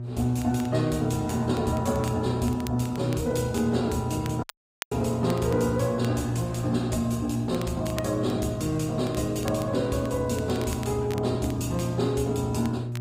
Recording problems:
lossy codec; Opus, log-spectral distance 4 dB, nothing above 15.5 kHz
mains hum; 60 Hz, harmonics up to 600 Hz, SNR 6 dB
crackle; vinyl, SNR 19 dB
dropout; at 4.5 s

